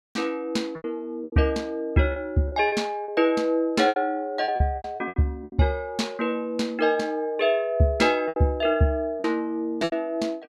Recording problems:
lost packets; 9% of the sound replaced, filled with repeated pitch periods

